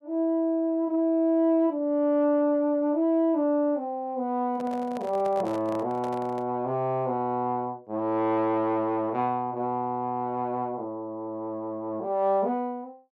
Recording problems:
microphone handling noise; from 4.5 to 6.5 s; peak -7 dB vs average level

